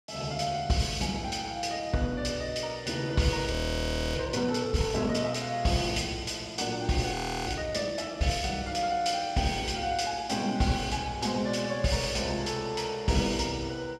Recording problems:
frozen audio; at 3.5 s for 0.5 s and at 7 s

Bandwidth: 14 kHz